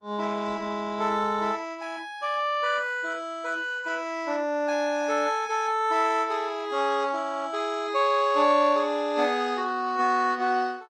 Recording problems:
lossy codec; Opus, log-spectral distance 3 dB

